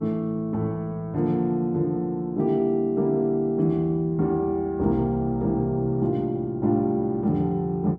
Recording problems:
hum; 60 Hz, harmonics up to 960 Hz, SNR 25 dB

